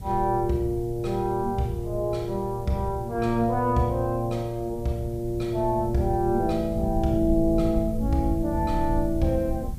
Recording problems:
hiss; SNR 27 dB
low-frequency rumble; below 86 Hz, SNR 10 dB

